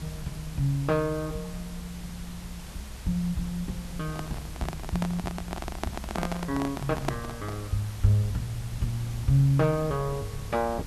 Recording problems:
hiss; slope -2 dB per octave, SNR 16 dB
low-frequency rumble; below 100 Hz, SNR 13 dB
microphone handling noise; from 4 to 7.5 s; peak +4 dB vs average level

